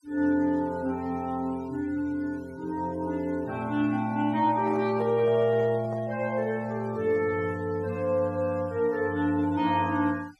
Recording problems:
noise reduction artefacts; signal-to-artefact ratio 25 dB
handling noise; from 4.5 to 6 s; peak -11 dB vs average level

